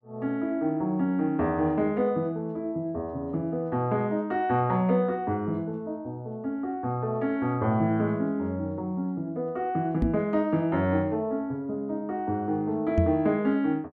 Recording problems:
microphone bump; at 10 s and at 13 s; peak +6 dB vs average level

